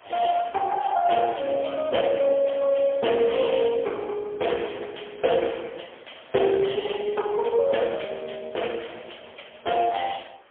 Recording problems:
telephone audio; 300 Hz to 3.3 kHz, AMR-NB, then MP3
wind on the microphone; below 2.4 kHz, SNR 26 dB

